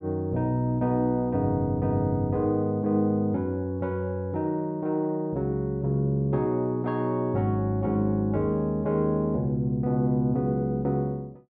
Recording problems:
none

